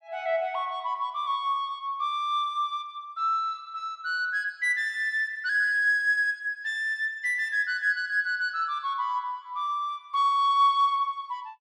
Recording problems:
none

